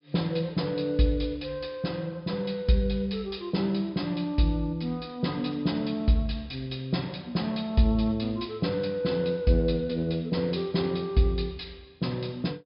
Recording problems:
treble missing; nothing above 5.5 kHz

